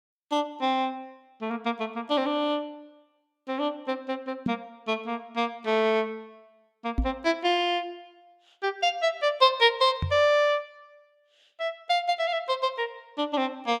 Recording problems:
microphone bump; at 4.5 s, at 7 s and at 10 s; peak +3 dB vs average level

